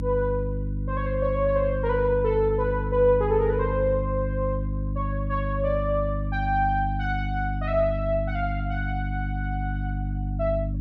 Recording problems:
electrical hum; 50 Hz, harmonics up to 300 Hz, SNR 3 dB

